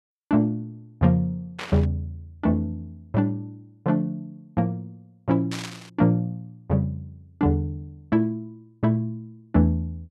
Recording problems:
burst of static; at 1.5 s and at 5.5 s; peak -4 dB vs average level

